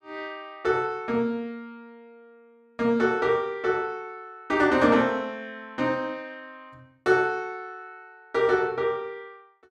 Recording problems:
none

